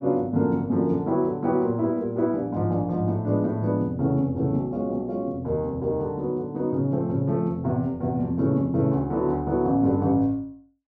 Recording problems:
none

